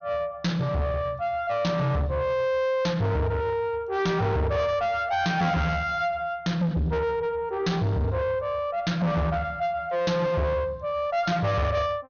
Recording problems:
treble cut off; nothing above 6.5 kHz
distorted audio; soft clipping, signal-to-distortion ratio 8 dB

